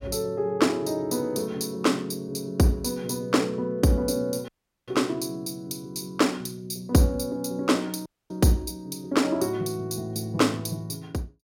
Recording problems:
dropout; at 4.5 s and at 8 s

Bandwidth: 16 kHz